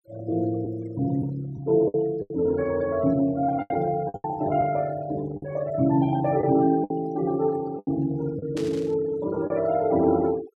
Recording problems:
noise reduction artefacts; signal-to-artefact ratio 20 dB
lost packets; 7% of the sound replaced, filled with the last packet
burst of static; at 8.5 s; peak -10 dB vs average level

